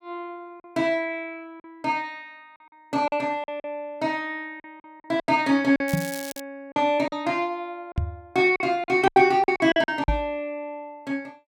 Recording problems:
packet loss; 9% of the sound replaced, filled with silence
crackling; at 6 s; loose cable, SNR 13 dB
microphone bump; at 6 s, at 8 s and at 10 s; peak +4 dB vs average level

